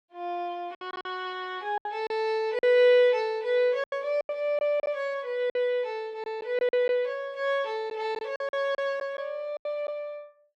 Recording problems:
lost packets; 9% of the sound replaced, filled with silence

